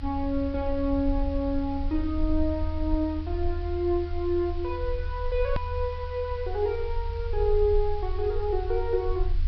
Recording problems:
low-pass filter; nothing above 5.5 kHz
background hiss; SNR 22 dB
low-frequency rumble; below 78 Hz, SNR 5 dB
hard cut with a click; at 5.5 s

